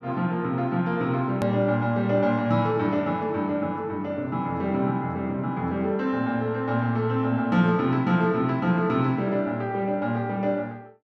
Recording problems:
edit click; at 1.5 s

